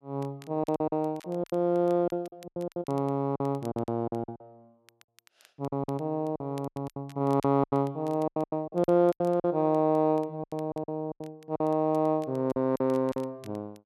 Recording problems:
crackle; vinyl, SNR 29 dB
packet loss; 15% of the sound replaced, filled with silence

